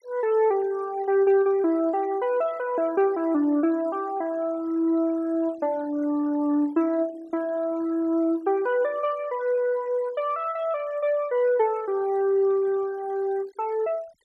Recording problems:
denoising artefacts; signal-to-artefact ratio 25 dB

